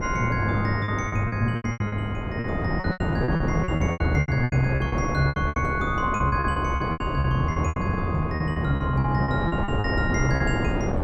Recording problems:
wind noise; below 490 Hz, SNR 2 dB
lost packets; 18% of the sound replaced, filled with repeated pitch periods

